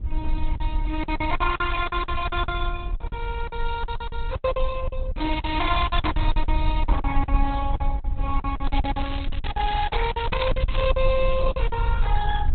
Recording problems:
lossy compression; Opus, log-spectral distance 4 dB, nothing above 3.8 kHz
low-frequency rumble; below 56 Hz, SNR 1 dB
packet loss; 15% of the sound replaced, filled with silence
crackle; at 5 s and from 8.5 to 11 s; loose cable, SNR 12 dB

